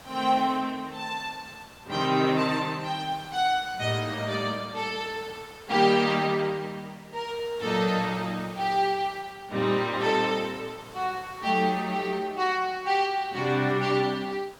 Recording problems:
background hiss; SNR 22 dB

